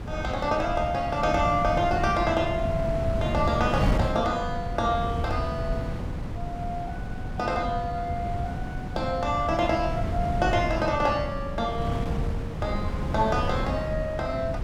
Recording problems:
wind noise; below 210 Hz, SNR 4 dB

